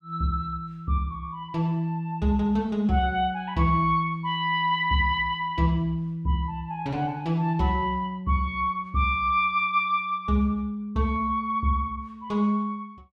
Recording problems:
none

